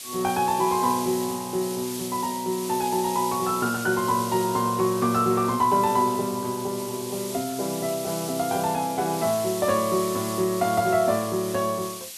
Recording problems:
hiss; SNR 10 dB

